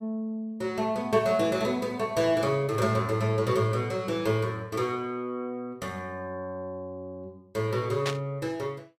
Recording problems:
static burst; at 8 s; peak +1 dB vs average level

